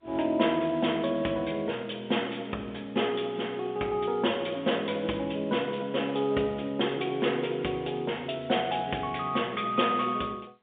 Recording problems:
phone line; 260 Hz to 3.6 kHz, G.711

